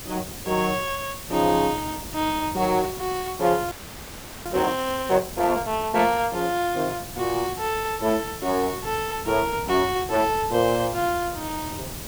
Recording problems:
hiss; slope 0 dB per octave, SNR 12 dB
wind on the microphone; below 360 Hz, SNR 17 dB
audio freezing; at 3.5 s for 0.5 s

